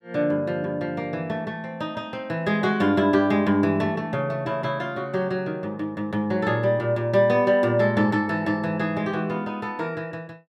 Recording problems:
none

